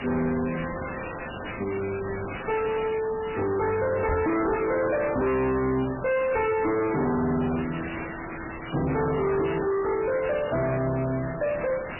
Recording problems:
lossy codec; MP3, log-spectral distance 10 dB, nothing above 2.4 kHz
distorted audio; hard clipping, signal-to-distortion ratio 5 dB
hiss; SNR 11 dB
knock on the microphone; at 4 s; peak +3 dB vs average level

